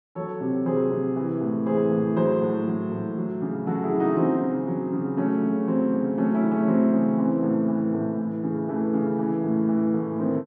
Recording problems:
none

